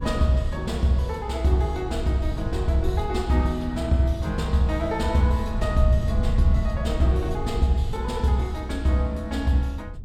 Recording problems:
wind on the microphone; below 90 Hz, SNR 7 dB

